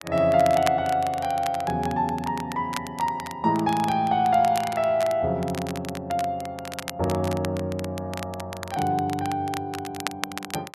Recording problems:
crackle; vinyl, SNR 13 dB

